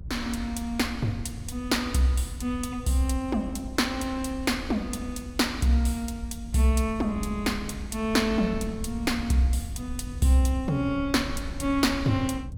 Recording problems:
low-frequency rumble; below 86 Hz, SNR 12 dB

